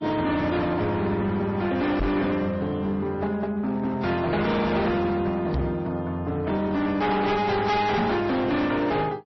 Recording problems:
lossy codec; AAC, then MP3, log-spectral distance 2 dB, nothing above 5.8 kHz
distortion; hard clipping, signal-to-distortion ratio 7 dB
microphone thump; at 2 s, at 5.5 s and at 8 s; peak +3 dB vs average level

